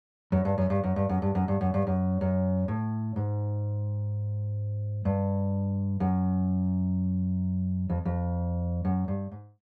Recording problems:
none

